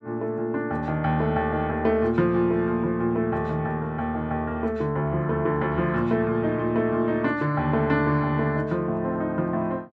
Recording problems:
none

